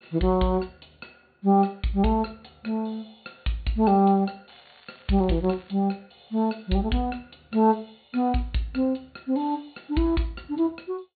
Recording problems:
low-pass filter; nothing above 4.5 kHz
crackling; from 4.5 to 5.5 s; loose cable, SNR 29 dB

